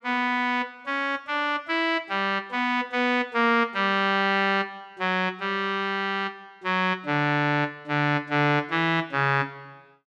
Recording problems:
none

